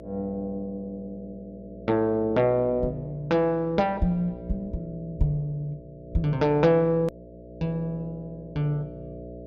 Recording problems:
electrical hum; 60 Hz, harmonics up to 660 Hz, SNR 15 dB
click at an edit; at 7 s

